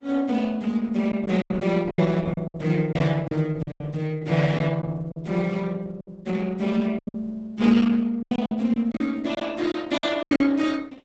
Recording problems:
lossy codec; Opus, log-spectral distance 3 dB, nothing above 7.8 kHz
lost packets; 10% of the sound replaced, filled with silence

